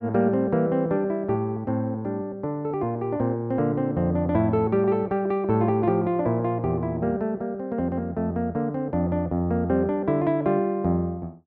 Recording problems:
none

